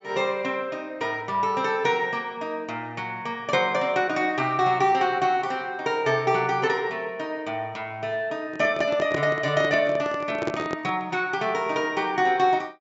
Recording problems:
low-pass filter; nothing above 8 kHz
microphone handling noise; from 8.5 to 11 s; peak +1 dB vs average level

